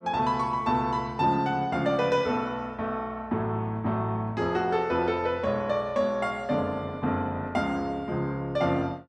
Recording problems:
none

